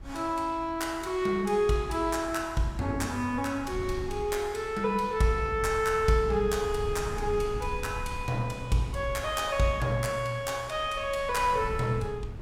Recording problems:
wind noise; below 120 Hz, SNR 13 dB

